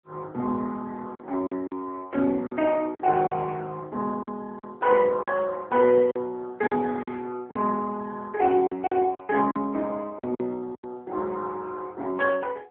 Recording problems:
phone line; 280 Hz to 2.8 kHz, AMR-NB
lost packets; 7% of the sound replaced, filled with silence

